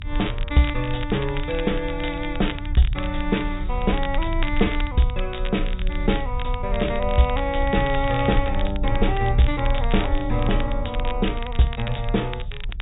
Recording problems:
treble cut off; nothing above 3.8 kHz
codec artefacts; MP2, log-spectral distance 2 dB
rumble; below 54 Hz, strongest tone 28 Hz, SNR 5 dB
crackling; vinyl, SNR 13 dB

